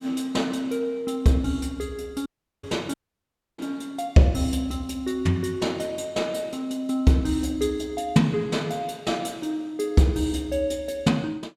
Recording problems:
audio cutting out; at 2.5 s and at 3 s for 0.5 s

